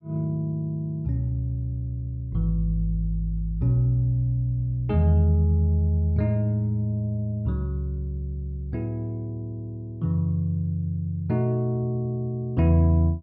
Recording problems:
treble cut off; nothing above 5.5 kHz

